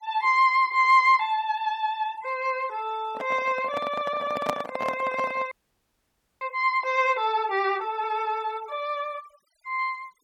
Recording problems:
denoising artefacts; signal-to-artefact ratio 25 dB
microphone handling noise; from 3 to 6.5 s; peak +1 dB vs average level
frozen audio; at 5.5 s for 1 s

